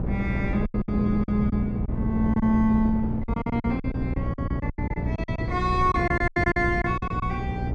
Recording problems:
electrical hum; 60 Hz, harmonics up to 480 Hz, SNR 6 dB
wind noise; below 270 Hz, SNR 5 dB
lost packets; 14% of the sound replaced, filled with silence

